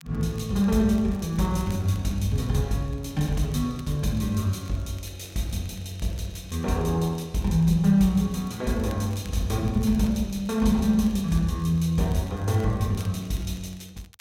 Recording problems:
crackle; vinyl, SNR 27 dB

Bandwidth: 16 kHz